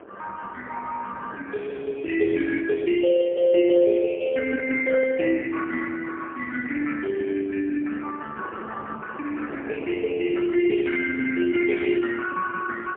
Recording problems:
telephone audio; 300 Hz to 3.1 kHz, AMR-NB, then MP3
wind noise; below 700 Hz, SNR 19 dB

